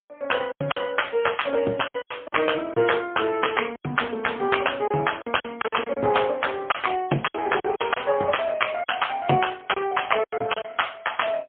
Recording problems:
telephone audio; 240 Hz to 3.3 kHz, AMR-NB, then MP3
lost packets; 9% of the sound replaced, filled with silence

